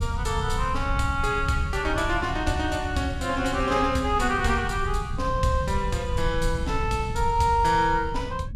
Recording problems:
low-frequency rumble; below 98 Hz, SNR 7 dB

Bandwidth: 15 kHz